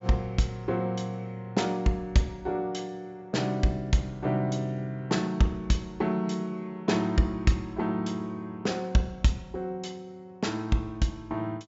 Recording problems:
treble missing; nothing above 7.5 kHz

